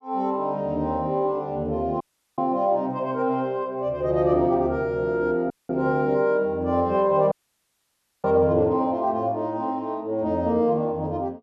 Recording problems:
audio cutting out; at 2 s, at 5.5 s and at 7.5 s for 1 s

